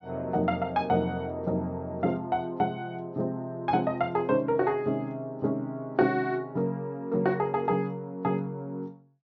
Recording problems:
treble cut off; nothing above 6.1 kHz

